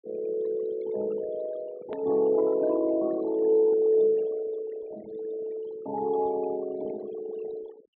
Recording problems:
low-pass filter; nothing above 4 kHz
denoising artefacts; signal-to-artefact ratio 18 dB
edit click; at 2 s

